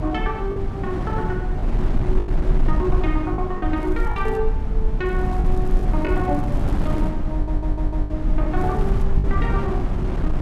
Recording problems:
rumble; below 42 Hz, SNR -1 dB
wind noise; below 260 Hz, SNR -1 dB
packet loss; 5% of the sound replaced, filled with the last packet
crackle; at 4 s, from 5 to 7 s and at 8.5 s; loose cable, SNR 26 dB
stutter; at 7.5 s

